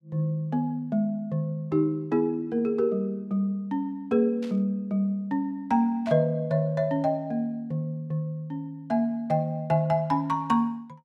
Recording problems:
burst of static; at 4.5 s and at 6 s; peak -13 dB vs average level

